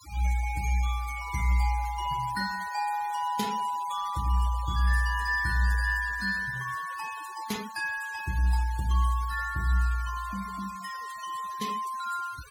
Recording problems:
noise reduction artefacts; signal-to-artefact ratio 16 dB

